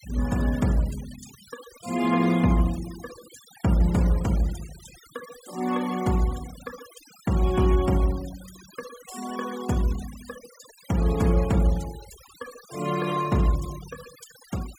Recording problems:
noise reduction artefacts; signal-to-artefact ratio 18 dB

